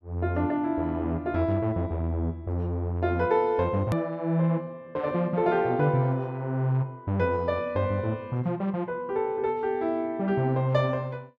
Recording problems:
click at an edit; at 4 s

